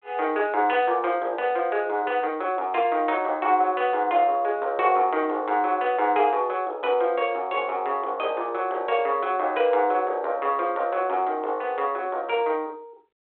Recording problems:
phone line; 280 Hz to 3.7 kHz, G.726

